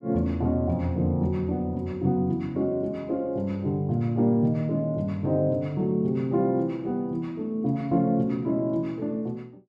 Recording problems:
none

